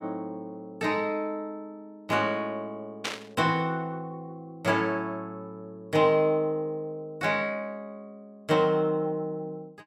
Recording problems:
static burst; at 3 s; peak +1 dB vs average level

